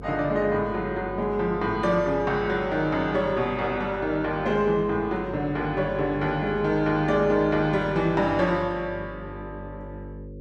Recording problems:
hum; 50 Hz, harmonics up to 550 Hz, SNR 15 dB

